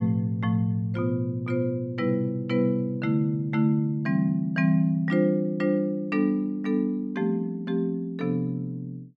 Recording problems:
none

